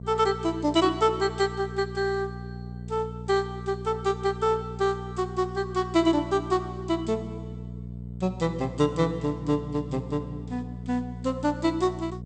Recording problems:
lossy compression; MP2, log-spectral distance 2 dB, nothing above 8.2 kHz
hum; 60 Hz, harmonics up to 480 Hz, SNR 11 dB

